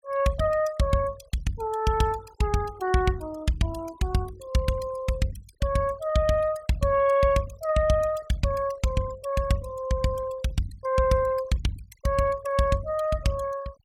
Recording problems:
noise reduction artefacts; signal-to-artefact ratio 20 dB

